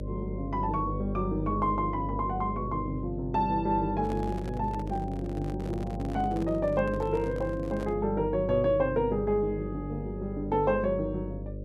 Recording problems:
hum; 50 Hz, harmonics up to 600 Hz, SNR 7 dB
microphone handling noise; from 4 to 8 s; peak -8 dB vs average level

